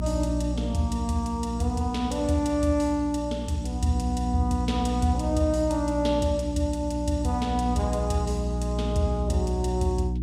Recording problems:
hum; 60 Hz, harmonics up to 360 Hz, SNR 4 dB

